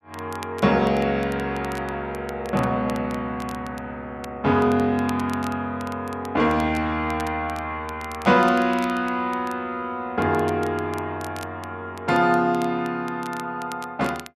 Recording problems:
crackle; vinyl, SNR 21 dB

